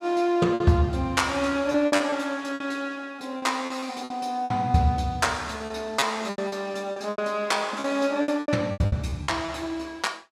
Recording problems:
packet loss; 12% of the sound replaced, filled with repeated pitch periods

